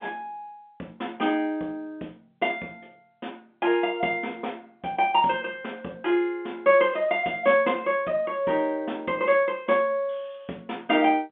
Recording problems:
phone line; 190 Hz to 3.5 kHz, G.711

